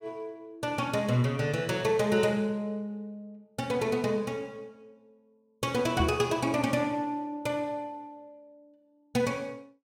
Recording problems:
microphone thump; at 6 s; peak +3 dB vs average level

